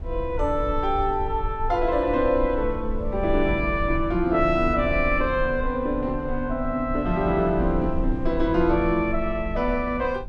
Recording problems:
low-frequency rumble; below 64 Hz, SNR 9 dB

